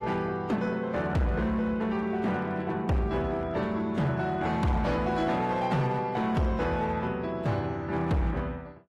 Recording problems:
lossy compression; AAC, log-spectral distance 2 dB, nothing above 13.1 kHz
distortion; hard clipping, uneven, signal-to-distortion ratio 12 dB

